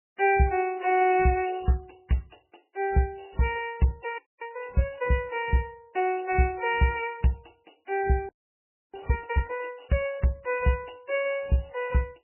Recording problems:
lossy compression; MP3, log-spectral distance 6 dB, nothing above 2.4 kHz
frozen audio; at 4 s and at 8.5 s for 0.5 s

